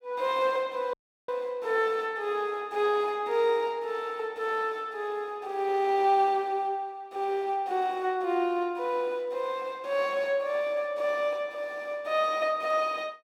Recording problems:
dropout; at 1 s

